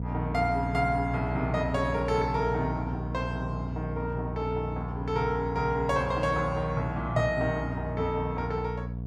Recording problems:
hum; 60 Hz, harmonics up to 660 Hz, SNR 5 dB

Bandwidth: 13.5 kHz